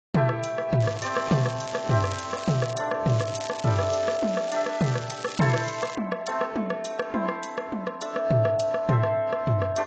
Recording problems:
lossy compression; AAC, log-spectral distance 6 dB, nothing above 7.3 kHz
crackle; from 1 to 2.5 s and from 3 to 6 s; loose cable, SNR 15 dB

